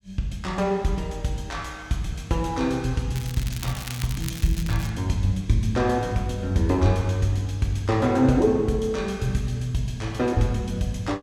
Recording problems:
crackling; from 3 to 5 s; loose cable, SNR 13 dB

